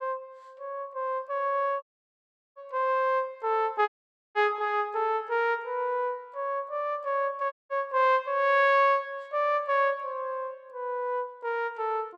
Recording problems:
dropout; at 2 s for 0.5 s, at 4 s and at 7.5 s

